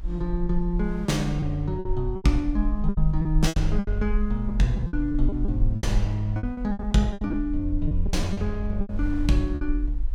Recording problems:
rumble; below 44 Hz, SNR 4 dB
wind on the microphone; below 360 Hz, SNR 24 dB
lost packets; 13% of the sound replaced, filled with repeated pitch periods

